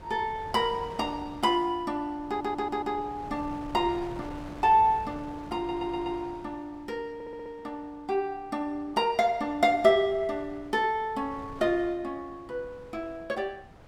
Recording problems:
wind noise; below 700 Hz, SNR 18 dB
stutter; at 2.5 s, at 5.5 s and at 7 s

